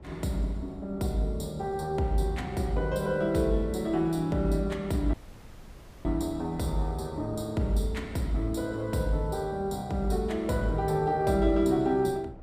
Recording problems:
wind on the microphone; below 360 Hz, SNR 20 dB
dropout; at 5 s for 1 s

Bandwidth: 15 kHz